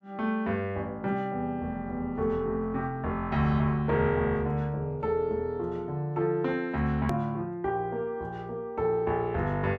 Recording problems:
hard cut with a click; at 7 s

